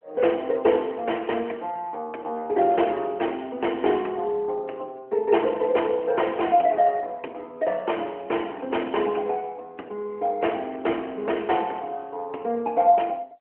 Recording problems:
telephone audio; 240 Hz to 3.1 kHz, AMR-NB

